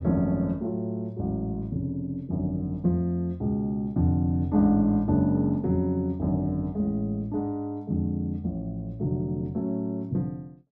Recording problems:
none

